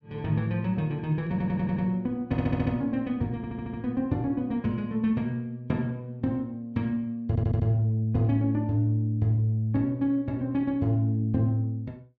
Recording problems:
audio stuttering; 4 times, first at 1.5 s

